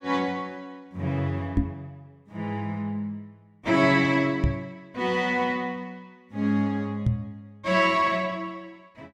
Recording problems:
microphone thump; at 1.5 s, at 4.5 s and at 7 s; peak +6 dB vs average level

